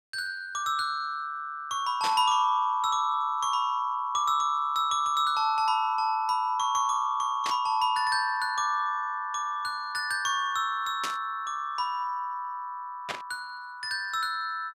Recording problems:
static burst; 4 times, first at 2 s; peak -1 dB vs average level

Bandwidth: 15.5 kHz